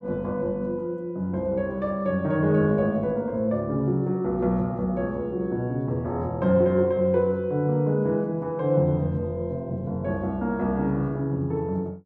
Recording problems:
none

